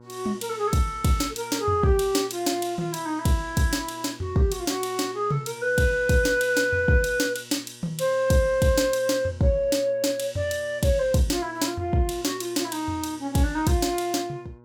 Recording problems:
hum; 60 Hz, harmonics up to 1.6 kHz, SNR 25 dB

